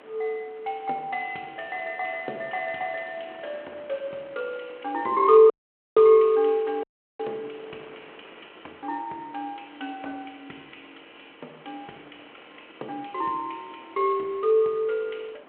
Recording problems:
telephone audio; 300 Hz to 3.7 kHz, G.726
wind noise; below 1.8 kHz, SNR 25 dB
dropout; at 5.5 s and at 7 s

